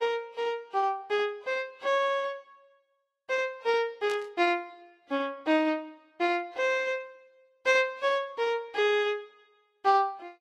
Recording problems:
codec artefacts; Vorbis, log-spectral distance 2 dB, nothing above 12.7 kHz
static burst; at 4 s; peak -10 dB vs average level

